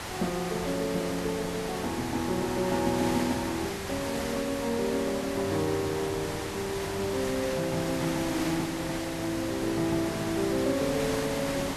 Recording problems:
hiss; slope -3 dB per octave, SNR 5 dB

